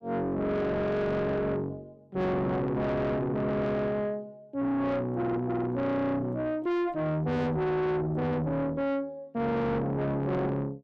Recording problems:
distorted audio; soft clipping, signal-to-distortion ratio 7 dB

